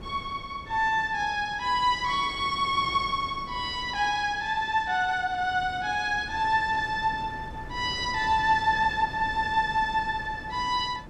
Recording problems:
wind noise; below 450 Hz, SNR 17 dB

